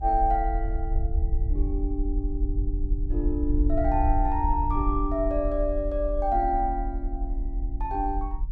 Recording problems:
rumble; below 52 Hz, strongest tone 34 Hz, SNR 1 dB

